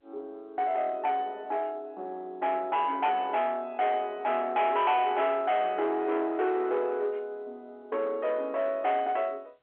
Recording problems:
phone line; 340 Hz to 3.6 kHz, G.711
distortion; soft clipping, signal-to-distortion ratio 10 dB

